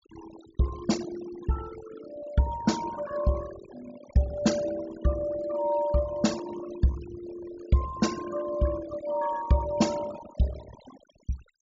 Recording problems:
low-pass filter; nothing above 7.3 kHz
denoising artefacts; signal-to-artefact ratio 14 dB

